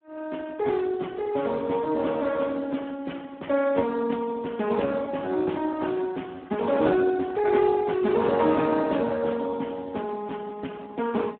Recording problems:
phone line; 220 Hz to 3.5 kHz, Speex

